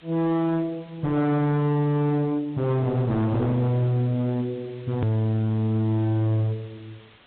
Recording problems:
treble cut off; nothing above 4 kHz
codec artefacts; AAC, log-spectral distance 3 dB
distortion; hard clipping, signal-to-distortion ratio 10 dB
hiss; SNR 28 dB
edit click; at 5 s

